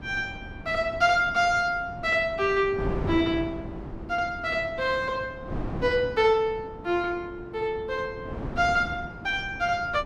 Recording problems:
wind on the microphone; below 380 Hz, SNR 12 dB

